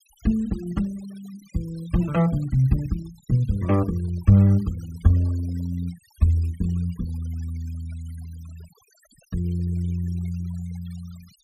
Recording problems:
noise reduction artefacts; signal-to-artefact ratio 25 dB

